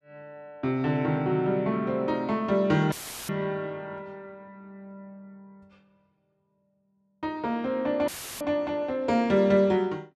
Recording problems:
audio cutting out; at 3 s and at 8 s; filled with static

